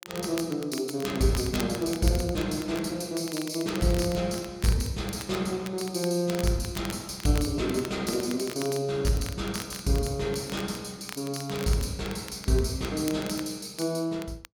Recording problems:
crackle; vinyl, SNR 14 dB

